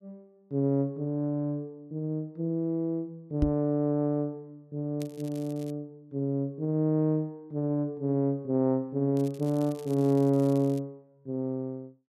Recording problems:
knock on the microphone; at 3.5 s; peak +5 dB vs average level
crackling; at 5 s and from 9 to 11 s; loose cable, SNR 24 dB

